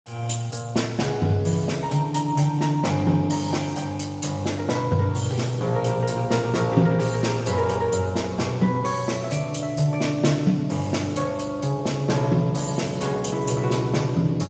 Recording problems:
codec artefacts; Speex, log-spectral distance 5 dB, nothing above 7.3 kHz

